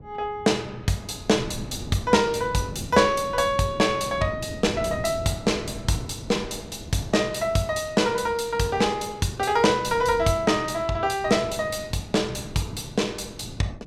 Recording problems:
wind on the microphone; below 260 Hz, SNR 15 dB

